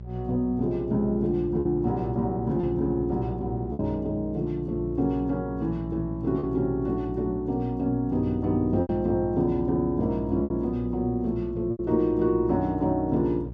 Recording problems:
hum; 60 Hz, harmonics up to 600 Hz, SNR 11 dB
packet loss; 3% of the sound replaced, filled with repeated pitch periods

